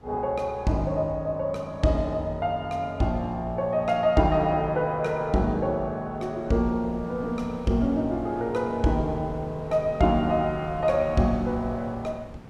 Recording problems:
wind noise; below 410 Hz, SNR 19 dB

